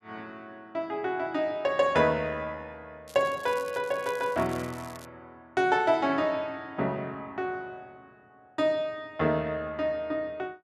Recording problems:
crackling; from 3 to 5 s; loose cable, SNR 21 dB

